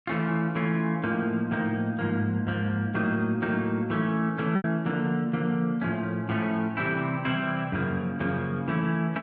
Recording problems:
packet loss; 0.9% of the sound replaced, filled with repeated pitch periods

